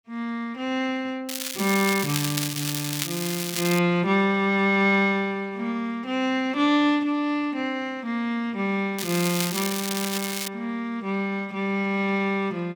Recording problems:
crackle; from 1.5 to 4 s and from 9 to 10 s; loose cable, SNR 4 dB

